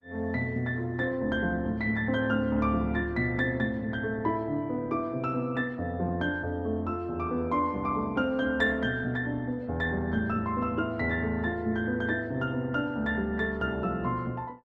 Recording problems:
lossy compression; Opus, log-spectral distance 2 dB

